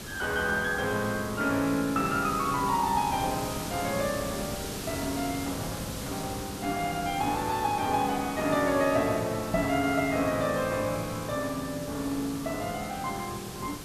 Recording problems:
background hiss; SNR 9 dB
microphone thump; at 9.5 s; peak +1 dB vs average level

